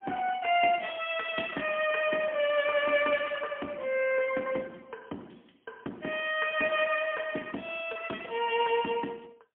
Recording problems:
telephone audio; 240 Hz to 3.3 kHz, AMR-NB, then MP3

